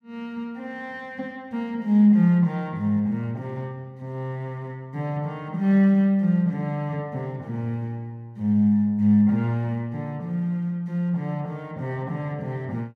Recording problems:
none

